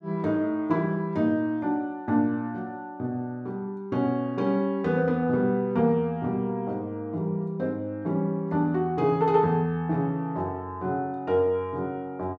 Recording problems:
none

